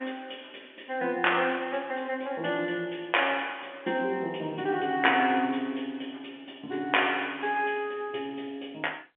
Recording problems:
phone line; 240 Hz to 3.3 kHz, G.711

